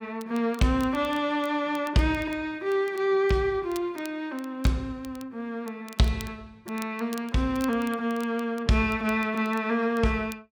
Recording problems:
crackling; vinyl, SNR 22 dB

